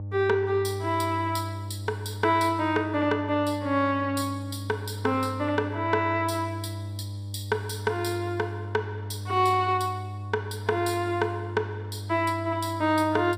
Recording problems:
hum; 50 Hz, harmonics up to 600 Hz, SNR 9 dB

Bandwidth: 15.5 kHz